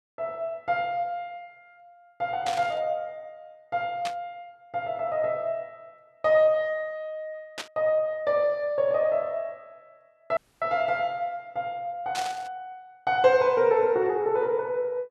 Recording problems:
burst of static; 4 times, first at 2.5 s; peak -3 dB vs average level
audio cutting out; at 10 s

